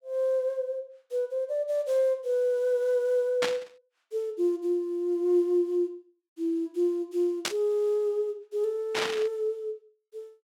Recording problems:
static burst; at 3.5 s, at 7.5 s and at 9 s; peak +4 dB vs average level

